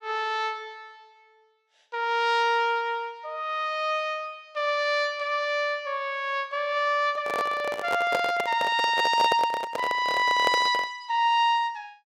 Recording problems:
handling noise; from 7 to 11 s; peak +1 dB vs average level

